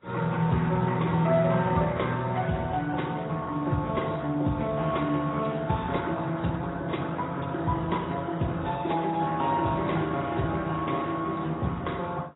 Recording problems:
codec artefacts; Speex, then AAC, log-spectral distance 5 dB, nothing above 3.8 kHz

